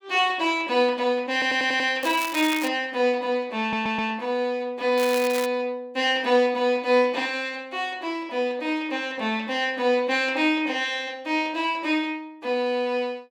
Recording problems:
audio stuttering; at 1.5 s and at 3.5 s
crackling; at 2 s and at 5 s; loose cable, SNR 11 dB

